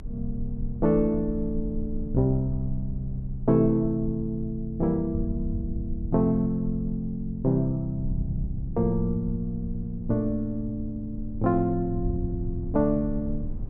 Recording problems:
rumble; below 50 Hz, strongest tone 20 Hz, SNR 13 dB
wind noise; below 88 Hz, SNR 12 dB

